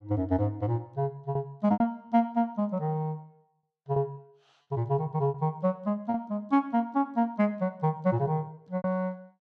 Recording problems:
lost packets; 5% of the sound replaced, filled with repeated pitch periods

